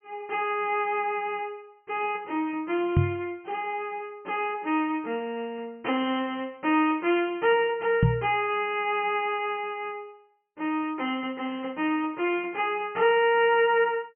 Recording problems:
low-pass filter; nothing above 3.1 kHz
microphone bump; at 3 s and at 8 s; peak +8 dB vs average level

